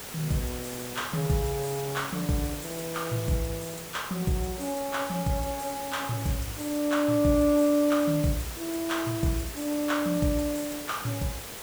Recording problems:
hiss; slope -2 dB per octave, SNR 9 dB

